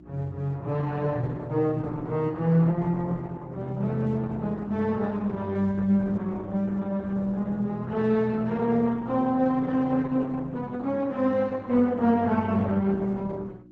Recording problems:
lossy compression; Opus, log-spectral distance 2 dB
electrical hum; 60 Hz, harmonics up to 360 Hz, SNR 23 dB

